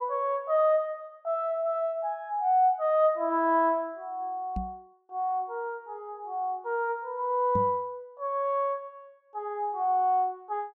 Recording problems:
knock on the microphone; at 4.5 s and at 7.5 s; peak -1 dB vs average level

